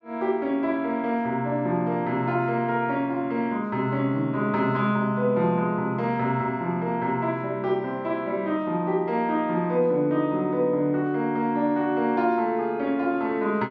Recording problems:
none

